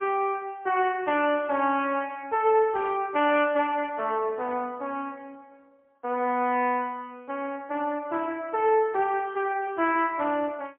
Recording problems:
telephone audio; 260 Hz to 3.1 kHz, AMR-NB, then MP3

